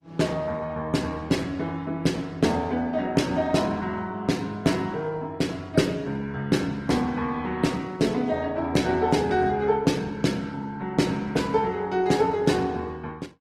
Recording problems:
lossy compression; Opus, log-spectral distance 3 dB, nothing above 18.3 kHz

